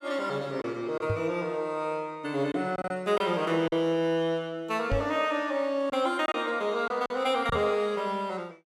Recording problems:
packet loss; 4% of the sound replaced, filled with silence
knock on the microphone; at 1 s, at 5 s and at 7.5 s; peak +1 dB vs average level

